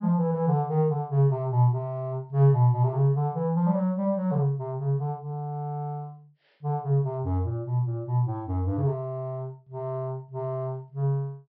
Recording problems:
treble missing; nothing above 5.6 kHz

